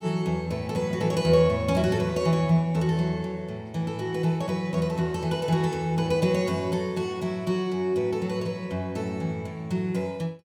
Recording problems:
none

